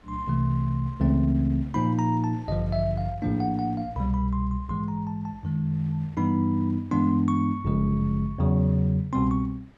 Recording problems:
wind on the microphone; below 1.4 kHz, SNR 29 dB

